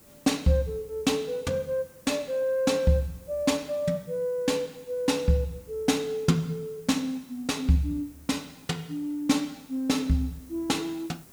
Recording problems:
background hiss; SNR 25 dB

